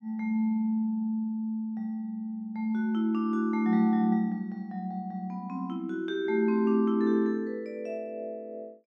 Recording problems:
none

